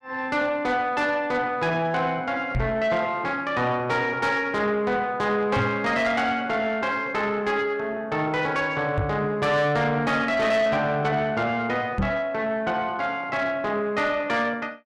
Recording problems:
distortion; soft clipping, signal-to-distortion ratio 12 dB
knock on the microphone; 4 times, first at 2.5 s; peak +3 dB vs average level

